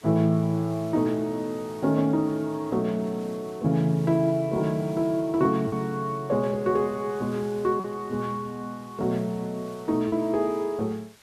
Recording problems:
background hiss; slope 0 dB per octave, SNR 25 dB
packet loss; 1.1% of the sound replaced, filled with repeated pitch periods

